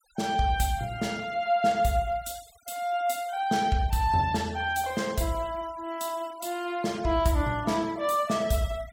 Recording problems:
noise reduction artefacts; signal-to-artefact ratio 22 dB

